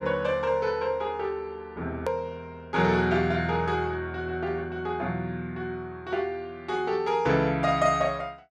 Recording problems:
edit click; at 2 s

